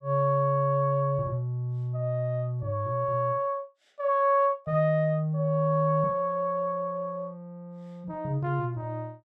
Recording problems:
none

